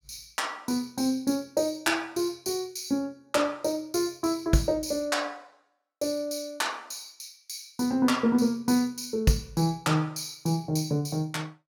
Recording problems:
none

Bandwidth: 17.5 kHz